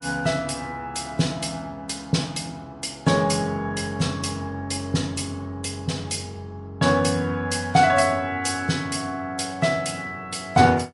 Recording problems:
lossy codec; MP3, log-spectral distance 4 dB, nothing above 11 kHz

